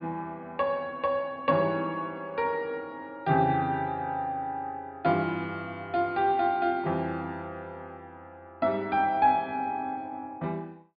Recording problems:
treble missing; nothing above 4.8 kHz

